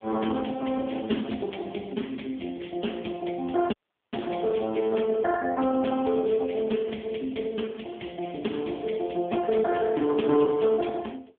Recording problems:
phone line; 190 Hz to 3.3 kHz, AMR-NB
audio cutting out; at 3.5 s

